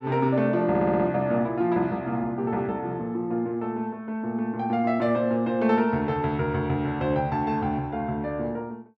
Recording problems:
stutter; at 0.5 s

